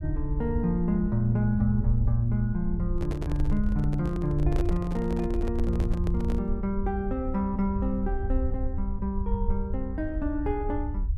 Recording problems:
rumble; below 74 Hz, SNR 3 dB
microphone handling noise; from 3 to 6.5 s; peak -3 dB vs average level

